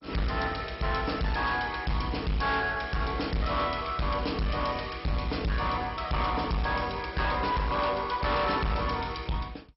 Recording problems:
lossy codec; MP2, log-spectral distance 6 dB, nothing above 5.5 kHz
distortion; hard clipping, uneven, signal-to-distortion ratio 7 dB

